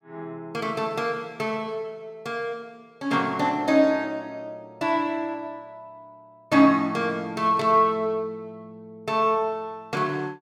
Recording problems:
burst of static; at 7.5 s; peak -12 dB vs average level

